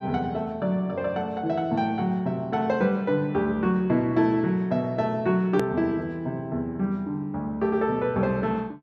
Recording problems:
edit click; at 5.5 s

